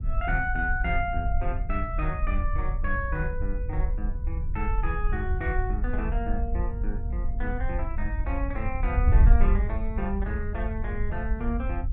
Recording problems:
treble missing; nothing above 4 kHz
wind on the microphone; below 66 Hz, SNR -3 dB

